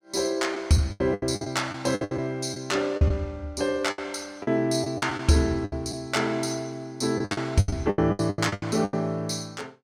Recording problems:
packet loss; 15% of the sound replaced, filled with the last packet

